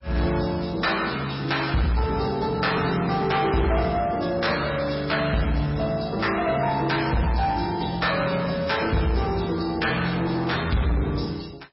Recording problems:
lossy codec; MP3, log-spectral distance 6 dB, nothing above 5.5 kHz
distorted audio; soft clipping, signal-to-distortion ratio 10 dB

